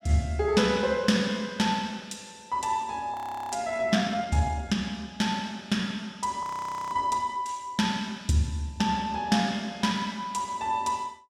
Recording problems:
audio freezing; at 3 s and at 6.5 s

